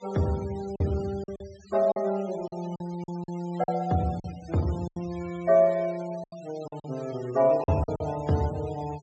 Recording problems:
treble missing; nothing above 8 kHz
noise reduction artefacts; signal-to-artefact ratio 21 dB
lost packets; 9% of the sound replaced, filled with silence

